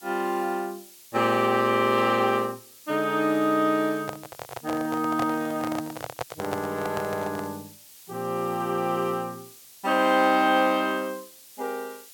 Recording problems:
background hiss; SNR 21 dB
microphone handling noise; from 4 to 7.5 s; peak -2 dB vs average level

